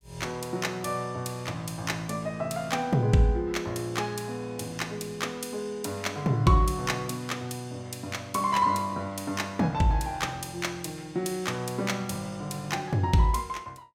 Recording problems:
none

